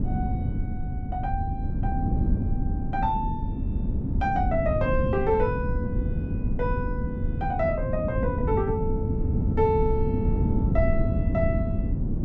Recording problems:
rumble; below 92 Hz, SNR 6 dB
wind on the microphone; below 210 Hz, SNR 0 dB

